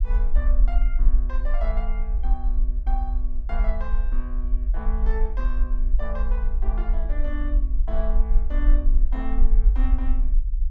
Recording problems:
rumble; below 44 Hz, SNR -12 dB

